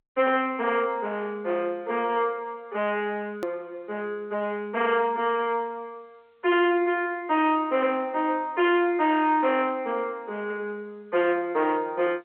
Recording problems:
phone line; 300 Hz to 3.5 kHz, G.711
distorted audio; hard clipping, signal-to-distortion ratio 10 dB
edit click; at 3.5 s

